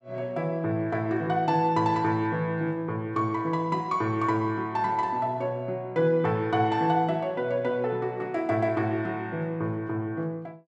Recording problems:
none

